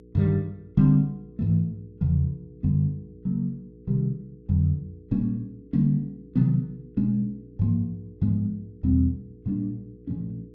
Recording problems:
electrical hum; 60 Hz, harmonics up to 480 Hz, SNR 23 dB

